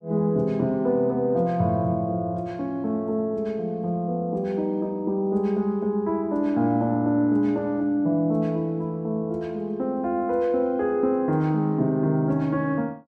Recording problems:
none

